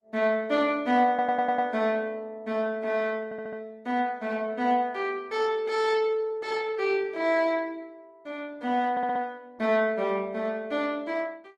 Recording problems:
codec artefacts; Opus, log-spectral distance 2 dB
stutter; at 1 s, at 3.5 s and at 9 s

